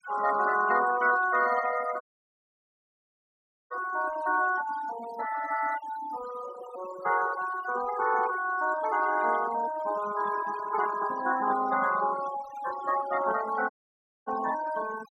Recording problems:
denoising artefacts; signal-to-artefact ratio 11 dB
audio cutting out; at 2 s for 1.5 s and at 14 s for 0.5 s

